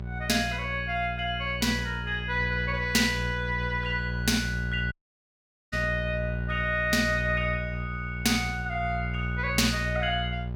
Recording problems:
electrical hum; 60 Hz, harmonics up to 600 Hz, SNR 6 dB
dropout; at 5 s for 1 s

